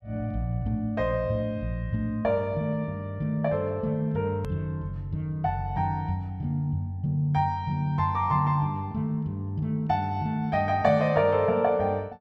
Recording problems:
click at an edit; at 4.5 s

